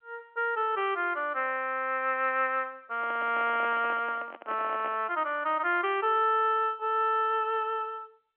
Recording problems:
phone line; 300 Hz to 3.2 kHz, G.711
handling noise; from 3 to 5 s; peak -8 dB vs average level

